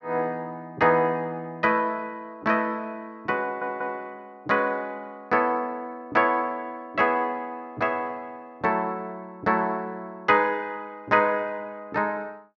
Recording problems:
audio stuttering; at 3.5 s

